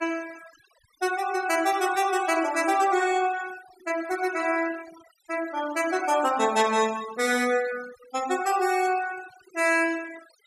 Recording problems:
noise reduction artefacts; signal-to-artefact ratio 17 dB

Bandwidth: 14.5 kHz